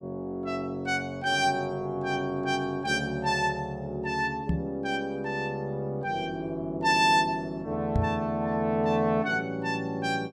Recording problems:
microphone bump; at 4.5 s and at 8 s; peak +4 dB vs average level

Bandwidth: 14.5 kHz